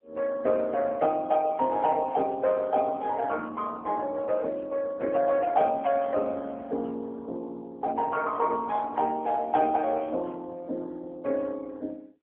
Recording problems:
telephone audio; 240 Hz to 3.1 kHz, AMR-NB

